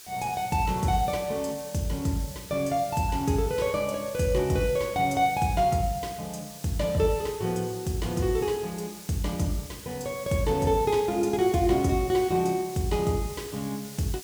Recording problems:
hiss; slope +2 dB per octave, SNR 16 dB

